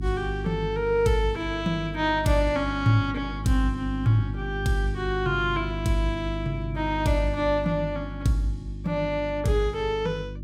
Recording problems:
hum; 50 Hz, harmonics up to 350 Hz, SNR 8 dB

